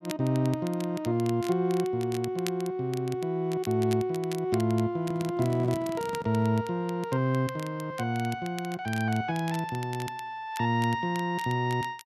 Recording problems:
crackling; vinyl, SNR 17 dB
handling noise; from 5 to 6.5 s; peak -8 dB vs average level

